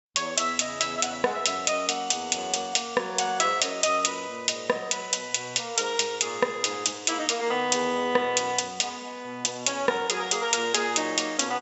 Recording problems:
low-pass filter; nothing above 7.6 kHz

